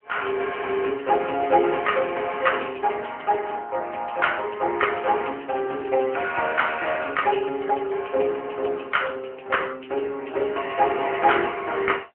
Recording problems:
telephone audio; 340 Hz to 3.2 kHz, AMR-NB

